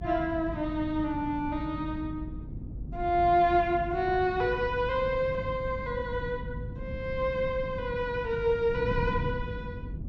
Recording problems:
low-pass filter; nothing above 8 kHz
hum; 50 Hz, harmonics up to 300 Hz, SNR 15 dB
wind on the microphone; below 170 Hz, SNR 10 dB

